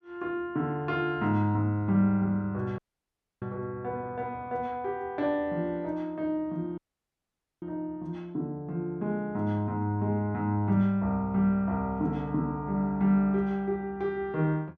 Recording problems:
audio cutting out; at 3 s for 0.5 s and at 7 s for 1 s

